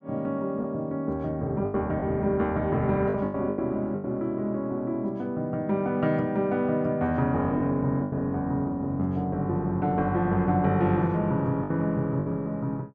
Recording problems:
packet loss; 5% of the sound replaced, filled with the last packet

